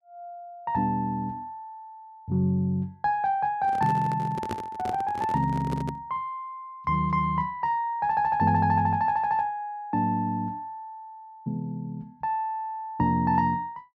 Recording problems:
handling noise; from 3.5 to 6 s; peak -2 dB vs average level

